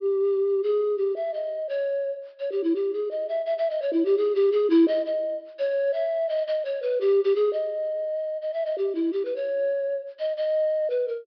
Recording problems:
treble cut off; nothing above 5.5 kHz

